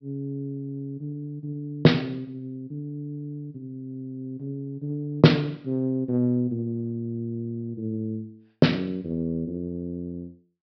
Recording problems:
treble missing; nothing above 5.5 kHz

